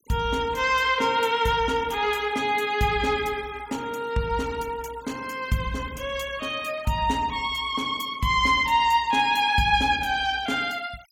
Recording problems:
denoising artefacts; signal-to-artefact ratio 23 dB

